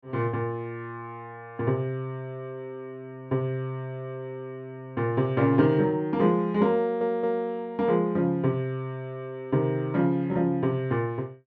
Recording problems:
stutter; at 7 s

